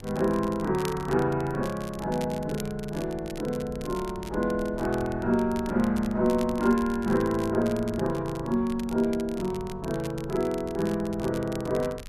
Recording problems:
wind noise; below 120 Hz, SNR 17 dB
crackle; vinyl, SNR 18 dB

